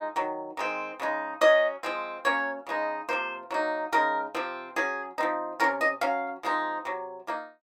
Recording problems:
none

